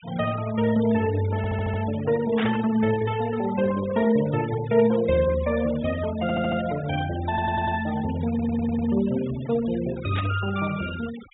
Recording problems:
treble cut off; nothing above 4 kHz
noise reduction artefacts; signal-to-artefact ratio 16 dB
audio stuttering; 4 times, first at 1.5 s
static burst; at 2.5 s and at 10 s; peak -3 dB vs average level

